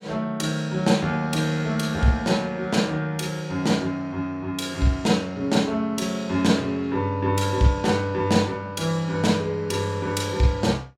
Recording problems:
none

